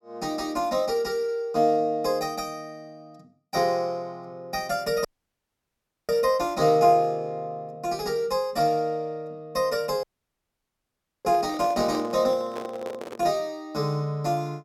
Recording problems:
audio cutting out; at 5 s for 1 s and at 10 s for 1 s
handling noise; from 11 to 13 s; peak -6 dB vs average level

